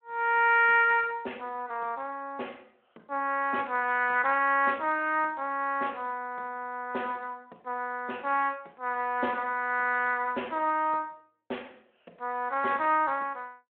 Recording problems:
phone line; 260 Hz to 3.3 kHz, Speex

